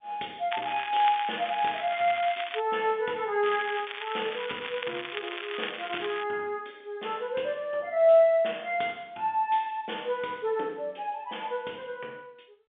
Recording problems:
telephone audio; 320 Hz to 3.6 kHz, G.711
crackle; from 0.5 to 2.5 s and from 3.5 to 6 s; loose cable, SNR 8 dB

